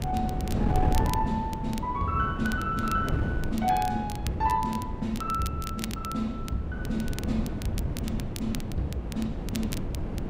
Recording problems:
wind on the microphone; below 230 Hz, SNR 2 dB
crackle; vinyl, SNR 13 dB

